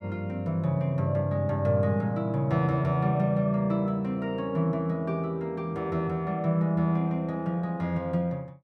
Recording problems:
none

